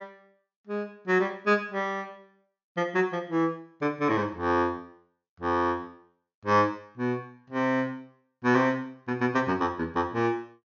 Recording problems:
treble cut off; nothing above 6.8 kHz

